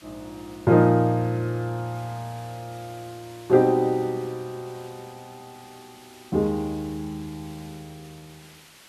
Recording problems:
background hiss; slope 0 dB per octave, SNR 25 dB

